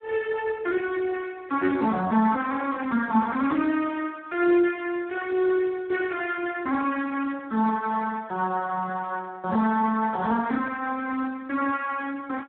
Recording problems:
telephone audio; 240 Hz to 2.6 kHz, Speex

